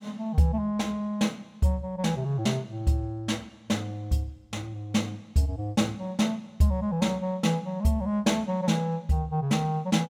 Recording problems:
none

